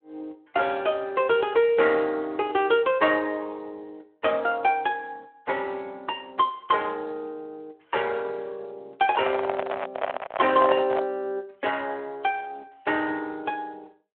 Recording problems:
telephone audio; 320 Hz to 3.6 kHz, Speex
microphone handling noise; from 9 to 11 s; peak +2 dB vs average level

